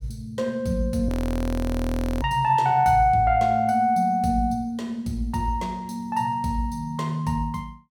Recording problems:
audio freezing; at 1 s for 1 s

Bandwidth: 17 kHz